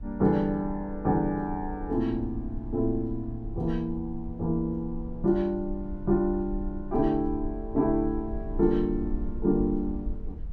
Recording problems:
low-frequency rumble; below 58 Hz, SNR 11 dB

